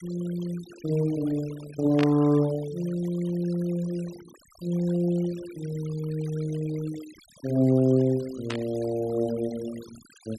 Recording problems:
noise reduction artefacts; signal-to-artefact ratio 21 dB
static burst; at 2 s and at 8.5 s; peak -2 dB vs average level

